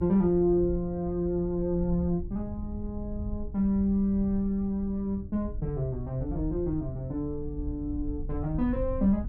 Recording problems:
electrical hum; 60 Hz, harmonics up to 300 Hz, SNR 24 dB
wind noise; below 78 Hz, SNR 10 dB

